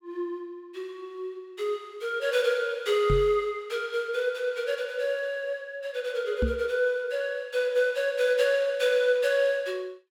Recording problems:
microphone bump; at 3 s and at 6.5 s; peak +3 dB vs average level

